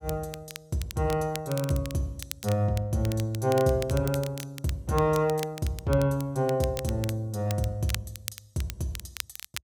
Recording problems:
crackling; vinyl, SNR 13 dB

